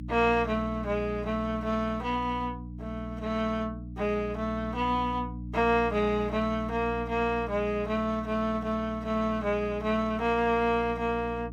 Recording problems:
hum; 60 Hz, harmonics up to 300 Hz, SNR 11 dB

